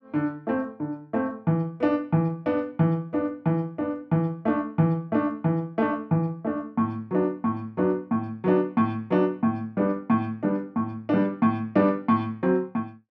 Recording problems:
none

